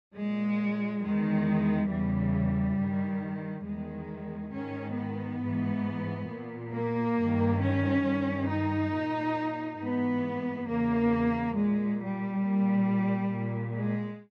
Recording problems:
none

